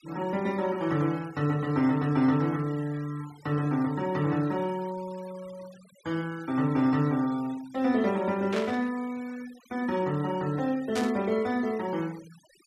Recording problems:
denoising artefacts; signal-to-artefact ratio 21 dB
burst of static; at 8.5 s and at 11 s; peak -3 dB vs average level

